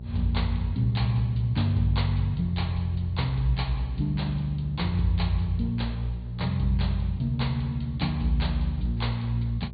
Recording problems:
treble cut off; nothing above 4.5 kHz
lossy codec; AAC, then MP2, log-spectral distance 2 dB
hum; 60 Hz, harmonics up to 600 Hz, SNR 12 dB

